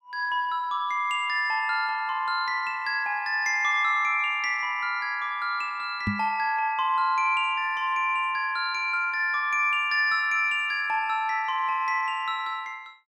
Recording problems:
microphone bump; at 6 s; peak +1 dB vs average level

